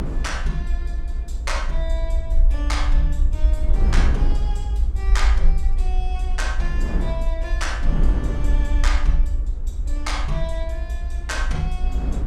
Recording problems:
rumble; below 54 Hz, strongest tone 28 Hz, SNR -7 dB
wind on the microphone; below 330 Hz, SNR 5 dB

